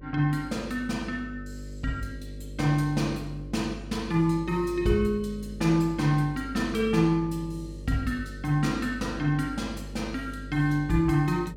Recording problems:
hum; 50 Hz, harmonics up to 600 Hz, SNR 13 dB

